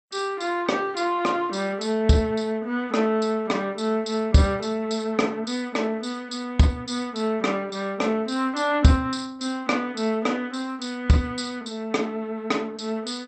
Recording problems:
codec artefacts; MP2, log-spectral distance 3 dB, nothing above 8.2 kHz

